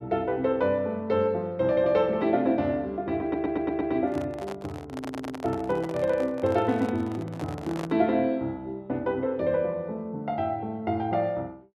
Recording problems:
audio stuttering; at 3 s and at 5 s
handling noise; from 4 to 8 s; peak -5 dB vs average level

